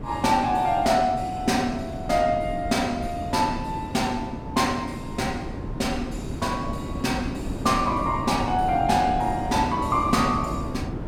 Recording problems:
wind noise; below 330 Hz, SNR 8 dB

